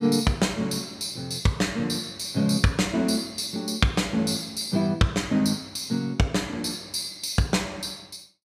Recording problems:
none

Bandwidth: 15 kHz